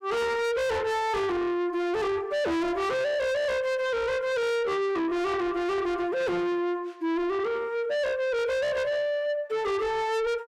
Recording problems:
distortion; soft clipping, signal-to-distortion ratio 7 dB

